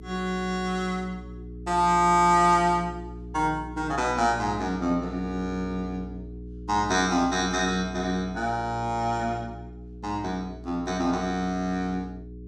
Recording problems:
hum; 60 Hz, harmonics up to 420 Hz, SNR 15 dB

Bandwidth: 15 kHz